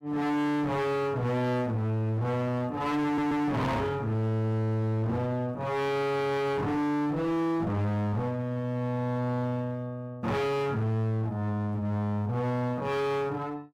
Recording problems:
distortion; hard clipping, uneven, signal-to-distortion ratio 6 dB
stutter; at 3 s

